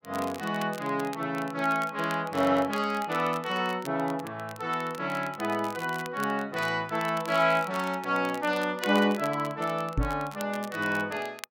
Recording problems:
crackling; vinyl, SNR 17 dB
microphone bump; at 10 s; peak +4 dB vs average level

